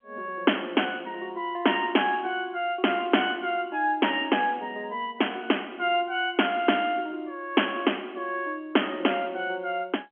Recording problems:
telephone audio; 240 Hz to 3.3 kHz, G.711

